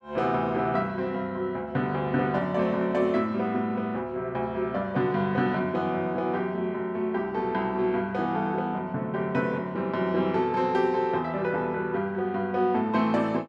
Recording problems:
none

